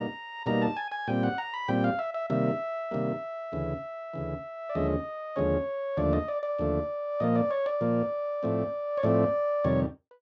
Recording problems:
none

